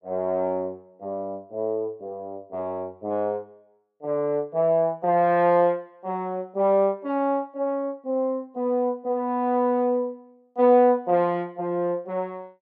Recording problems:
none

